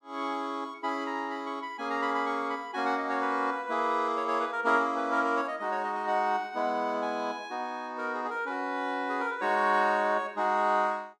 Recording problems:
none

